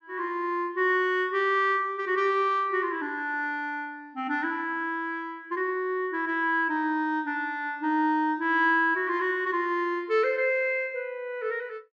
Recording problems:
none

